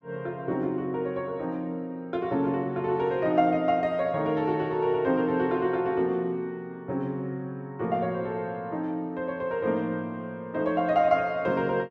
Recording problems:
none

